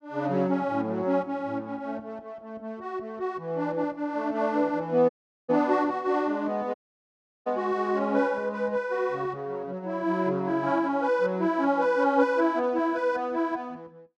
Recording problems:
dropout; at 5 s and at 6.5 s for 0.5 s

